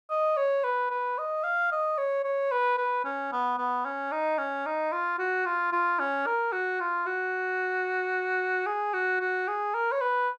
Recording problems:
none

